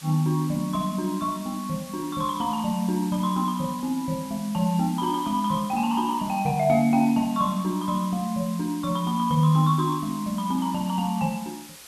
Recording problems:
background hiss; slope +1 dB per octave, SNR 17 dB

